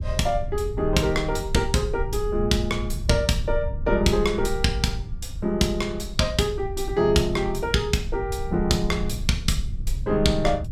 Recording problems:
low-frequency rumble; below 76 Hz, SNR 8 dB

